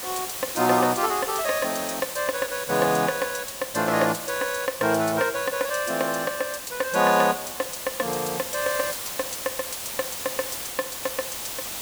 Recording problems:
hiss; slope -1 dB per octave, SNR 6 dB

